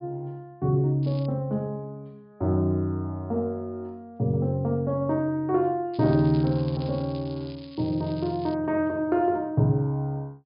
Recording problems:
treble cut off; nothing above 5.1 kHz
crackle; at 1 s and from 6 to 8.5 s; loose cable, SNR 23 dB

